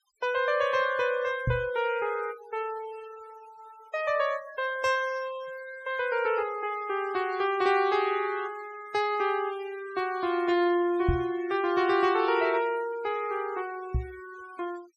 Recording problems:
noise reduction artefacts; signal-to-artefact ratio 18 dB
microphone bump; at 1.5 s, at 11 s and at 14 s; peak +5 dB vs average level

